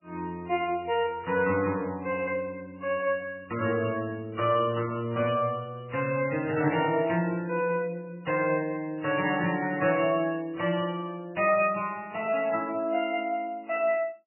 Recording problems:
codec artefacts; MP3, log-spectral distance 4 dB, nothing above 2.9 kHz

